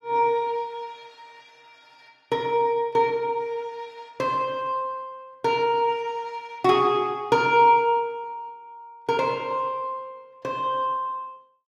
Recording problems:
none

